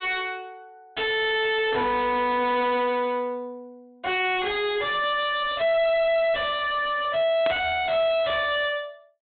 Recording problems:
treble cut off; nothing above 4 kHz
distorted audio; soft clipping, signal-to-distortion ratio 6 dB
static burst; at 7.5 s; peak -4 dB vs average level

